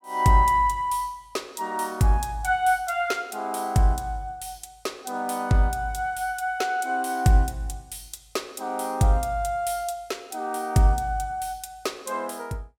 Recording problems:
none

